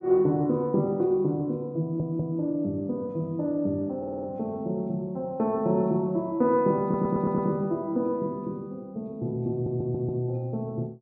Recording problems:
audio stuttering; 4 times, first at 2 s

